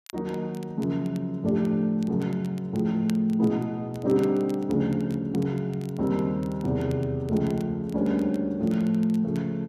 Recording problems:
crackling; vinyl, SNR 27 dB

